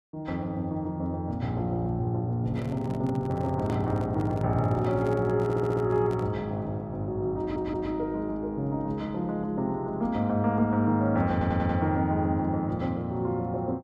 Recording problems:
microphone handling noise; from 2.5 to 6.5 s; peak -6 dB vs average level
stutter; at 5.5 s, at 7.5 s and at 11 s

